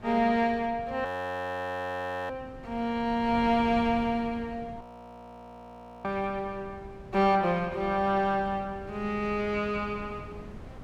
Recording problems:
wind noise; below 310 Hz, SNR 17 dB
frozen audio; at 1 s for 1 s and at 5 s for 1 s

